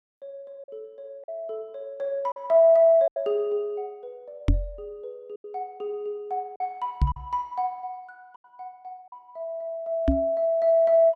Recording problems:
packet loss; 5% of the sound replaced, filled with silence
microphone bump; at 4.5 s, at 7 s and at 10 s; peak +6 dB vs average level

